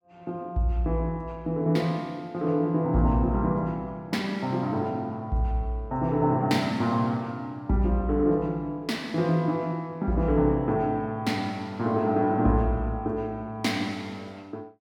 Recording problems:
none

